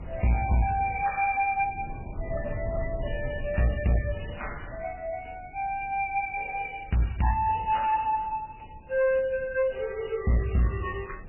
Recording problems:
lossy codec; MP3, log-spectral distance 6 dB, nothing above 2.4 kHz
distortion; hard clipping, uneven, signal-to-distortion ratio 10 dB
wind noise; below 130 Hz, SNR 15 dB

